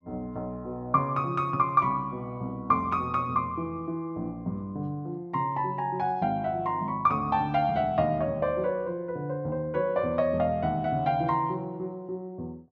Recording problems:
none

